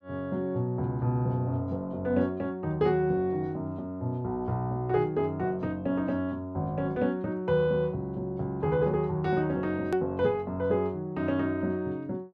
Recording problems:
edit click; at 10 s

